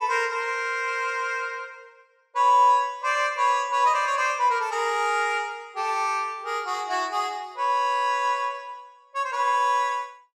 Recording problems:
none

